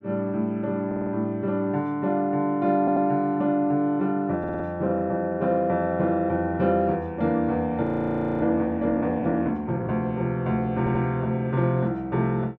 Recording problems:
stutter; 4 times, first at 1 s
audio freezing; at 8 s for 0.5 s

